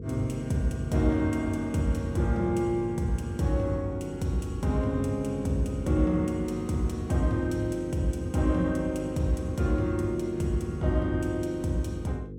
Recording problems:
hum; 50 Hz, harmonics up to 500 Hz, SNR 11 dB

